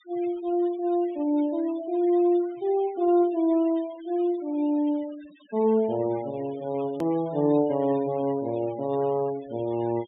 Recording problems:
treble missing; nothing above 4 kHz
noise reduction artefacts; signal-to-artefact ratio 24 dB
hard cut with a click; at 7 s

